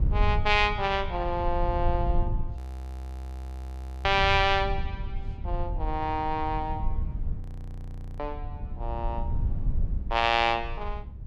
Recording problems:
low-frequency rumble; below 78 Hz, SNR 6 dB
audio freezing; at 2.5 s for 1.5 s and at 7.5 s for 1 s

